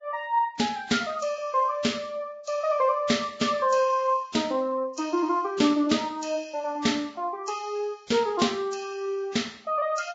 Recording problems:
codec artefacts; Vorbis, log-spectral distance 3 dB, nothing above 7.3 kHz

